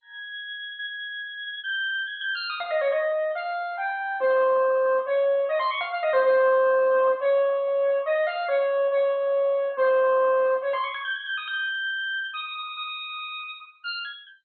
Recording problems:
lossy compression; MP2, log-spectral distance 3 dB, nothing above 3.8 kHz

